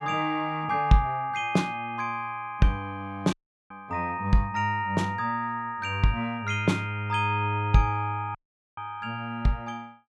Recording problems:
audio cutting out; at 3.5 s and at 8.5 s

